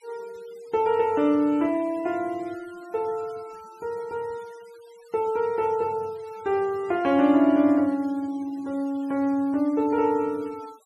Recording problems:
noise reduction artefacts; signal-to-artefact ratio 27 dB

